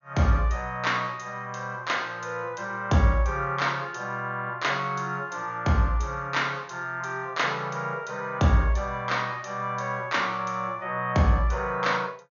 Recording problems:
treble missing; nothing above 6.9 kHz

